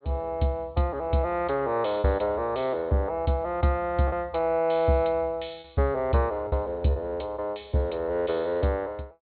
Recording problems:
treble missing; nothing above 4.2 kHz
packet loss; 2% of the sound replaced, filled with repeated pitch periods

